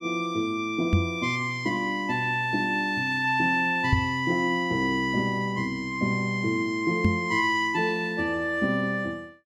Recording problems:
microphone bump; at 1 s, at 4 s and at 7 s; peak +7 dB vs average level

